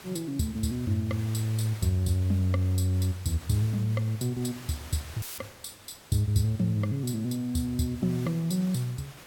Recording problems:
hiss; slope -3 dB per octave, SNR 19 dB
audio cutting out; at 5 s; filled with static

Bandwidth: 17 kHz